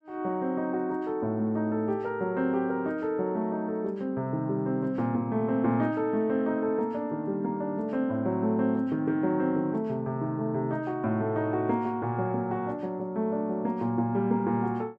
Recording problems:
none

